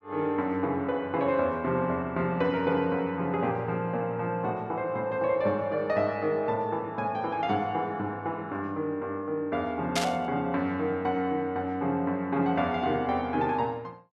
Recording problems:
burst of static; at 10 s; peak +4 dB vs average level

